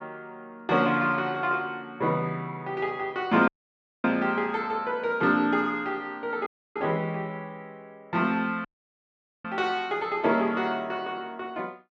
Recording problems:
audio cutting out; at 3.5 s for 0.5 s, at 6.5 s and at 8.5 s for 1 s

